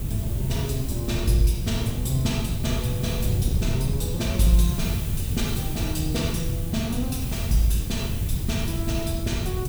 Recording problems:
hiss; slope +1 dB per octave, SNR 10 dB
wind noise; below 140 Hz, SNR 1 dB

